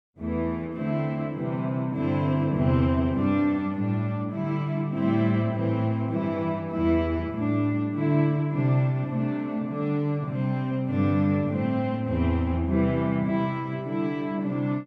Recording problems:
none

